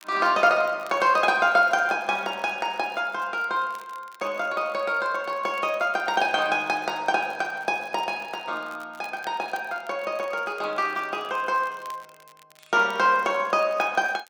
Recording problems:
crackling; vinyl, SNR 28 dB

